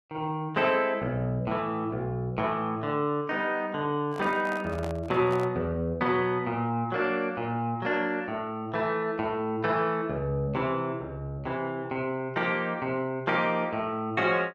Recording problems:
handling noise; from 4 to 5.5 s; peak -5 dB vs average level

